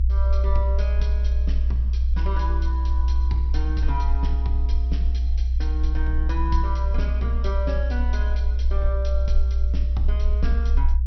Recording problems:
treble cut off; nothing above 5.9 kHz
rumble; below 62 Hz, strongest tone 62 Hz, SNR -10 dB

